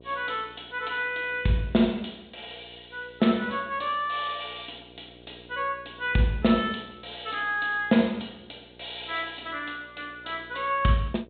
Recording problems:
treble cut off; nothing above 4 kHz
hum; 60 Hz, harmonics up to 1.1 kHz, SNR 25 dB

